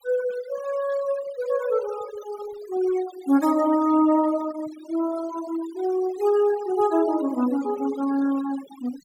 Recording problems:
denoising artefacts; signal-to-artefact ratio 16 dB

